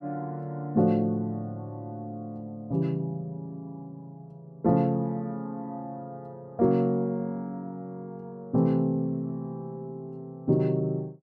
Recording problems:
none

